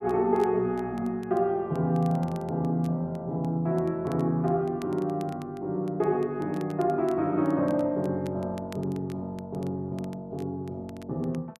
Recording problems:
crackling; vinyl, SNR 27 dB

